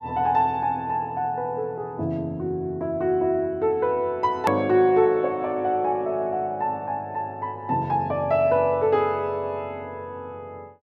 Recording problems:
click at an edit; at 4.5 s

